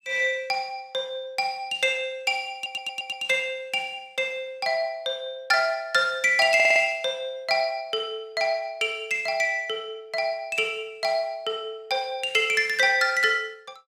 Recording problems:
audio stuttering; at 2.5 s and at 6.5 s

